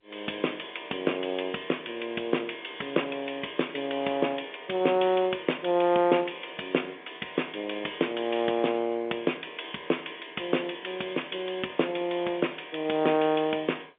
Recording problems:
phone line; 280 Hz to 3.6 kHz, G.711

